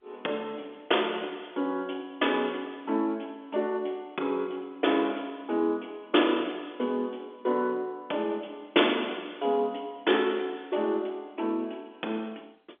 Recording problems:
phone line; 240 Hz to 3.5 kHz, G.711

